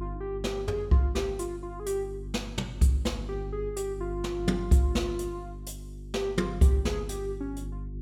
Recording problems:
electrical hum; 50 Hz, harmonics up to 400 Hz, SNR 10 dB

